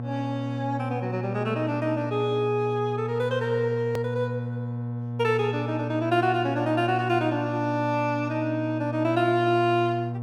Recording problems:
hum; 60 Hz, harmonics up to 720 Hz, SNR 6 dB
hard cut with a click; at 4 s

